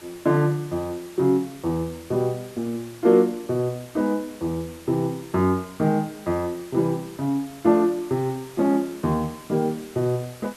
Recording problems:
background hiss; slope -2 dB per octave, SNR 21 dB

